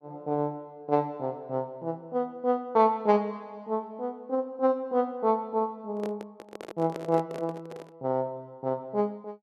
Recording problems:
handling noise; from 6 to 8 s; peak -4 dB vs average level

